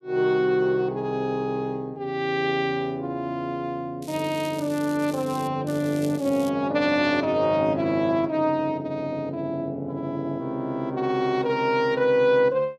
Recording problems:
crackling; from 4 to 5.5 s and at 5.5 s; loose cable, SNR 19 dB

